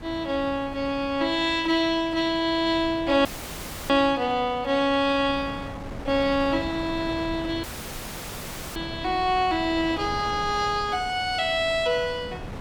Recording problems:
wind on the microphone; below 680 Hz, SNR 15 dB
dropout; at 3.5 s for 0.5 s and at 7.5 s for 1 s

